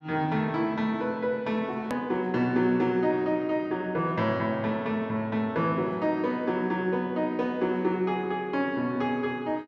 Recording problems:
edit click; at 2 s

